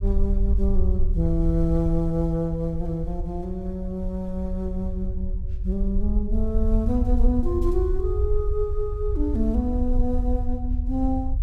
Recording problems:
rumble; below 60 Hz, SNR 0 dB

